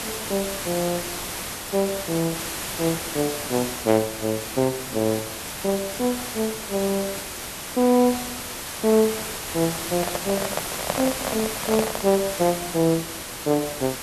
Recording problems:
hiss; slope -2 dB per octave, SNR 5 dB
microphone handling noise; from 10 to 12 s; peak +3 dB vs average level

